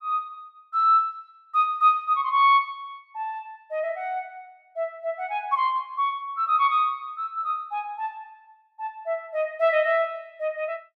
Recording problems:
none

